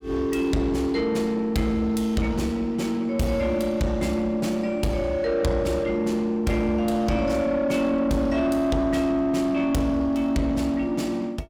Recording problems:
distorted audio; soft clipping, signal-to-distortion ratio 11 dB

